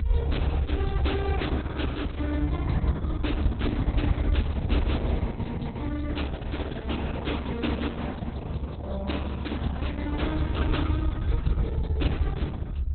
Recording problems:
lossy codec; Opus, log-spectral distance 2 dB, nothing above 4 kHz
low-frequency rumble; below 78 Hz, SNR -5 dB

